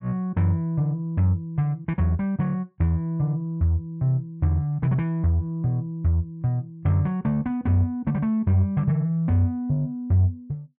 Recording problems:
treble missing; nothing above 5.5 kHz

